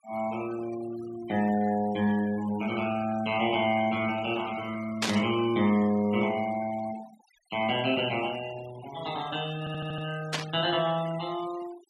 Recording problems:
noise reduction artefacts; signal-to-artefact ratio 17 dB
burst of static; at 5 s and at 10 s; peak +5 dB vs average level
audio stuttering; at 9.5 s

